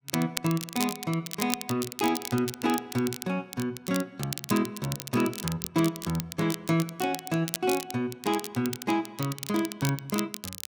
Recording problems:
crackling; vinyl, SNR 7 dB

